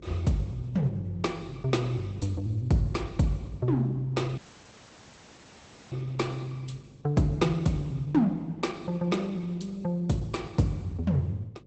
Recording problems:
lossy codec; Opus, log-spectral distance 4 dB, nothing above 8.2 kHz
electrical hum; 50 Hz, harmonics up to 550 Hz, SNR 21 dB
audio cutting out; at 4.5 s for 1.5 s

